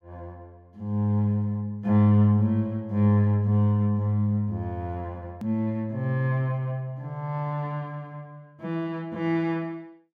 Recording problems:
click at an edit; at 5.5 s

